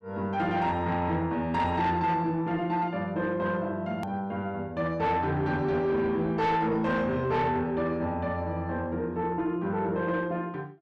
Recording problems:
distorted audio; soft clipping, signal-to-distortion ratio 11 dB
edit click; at 4 s

